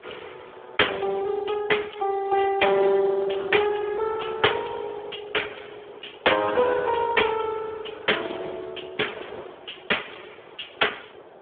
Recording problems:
telephone audio; 320 Hz to 3.5 kHz, Speex
wind noise; below 940 Hz, SNR 21 dB

